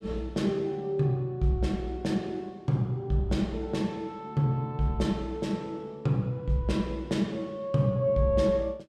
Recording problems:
none

